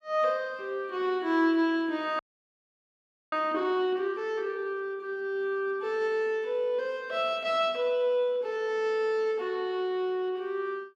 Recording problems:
audio freezing; at 2 s for 1 s

